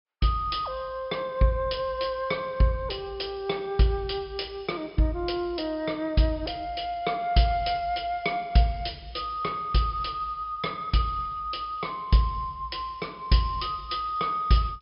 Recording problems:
treble cut off; nothing above 5.5 kHz

